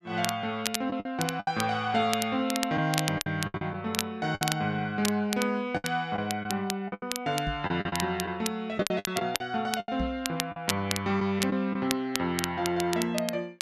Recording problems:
crackle; vinyl, SNR 6 dB
packet loss; 9% of the sound replaced, filled with the last packet
knock on the microphone; at 7.5 s and at 10 s; peak 0 dB vs average level

